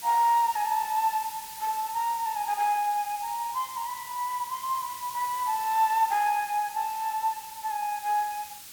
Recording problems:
hiss; slope +2 dB per octave, SNR 13 dB

